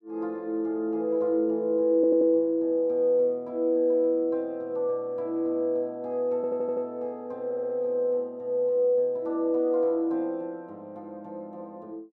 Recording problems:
stutter; at 2 s, at 6.5 s and at 7.5 s

